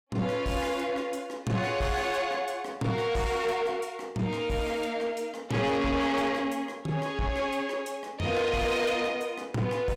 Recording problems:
distorted audio; soft clipping, signal-to-distortion ratio 10 dB

